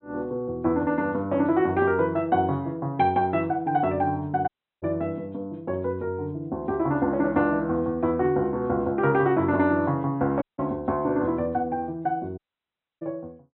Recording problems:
treble cut off; nothing above 4 kHz
audio cutting out; at 4.5 s, at 10 s and at 12 s for 0.5 s

